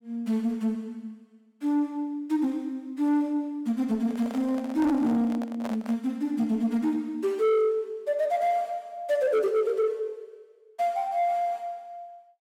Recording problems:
distortion; soft clipping, signal-to-distortion ratio 12 dB
microphone handling noise; from 4 to 6 s; peak -5 dB vs average level

